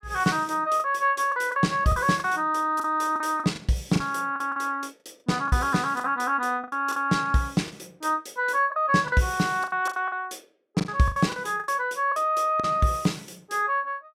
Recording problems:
packet loss; 10% of the sound replaced, filled with the last packet

